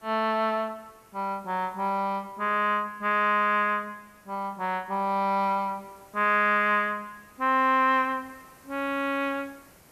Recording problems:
background hiss; SNR 30 dB

